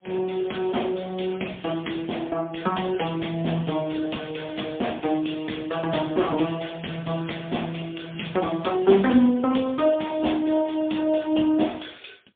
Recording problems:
telephone audio; 220 Hz to 3.6 kHz, AMR-NB, then MP3

